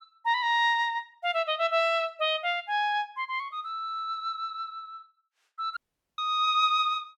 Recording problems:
dropout; at 6 s

